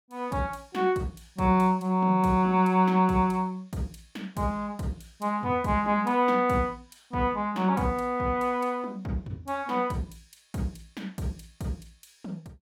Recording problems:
none

